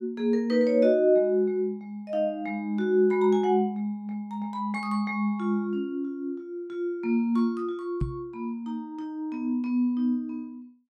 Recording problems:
microphone thump; at 8 s; peak +2 dB vs average level

